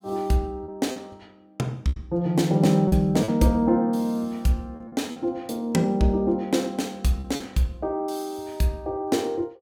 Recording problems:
packet loss; 5% of the sound replaced, filled with repeated pitch periods

